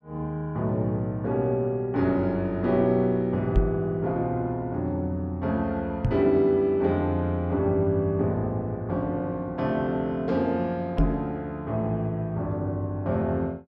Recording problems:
microphone bump; at 3.5 s, at 6 s and at 11 s; peak +6 dB vs average level

